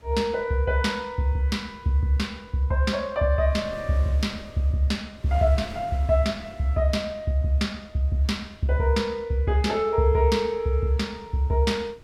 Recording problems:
wind noise; below 500 Hz, SNR 22 dB

